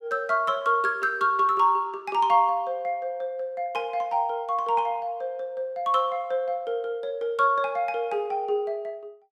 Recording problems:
none

